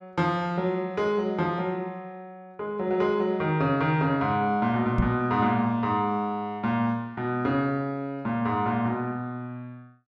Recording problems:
knock on the microphone; at 5 s; peak +5 dB vs average level

